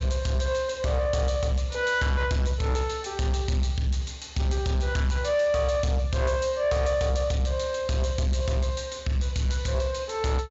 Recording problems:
low-pass filter; nothing above 7.6 kHz
distorted audio; soft clipping, signal-to-distortion ratio 11 dB

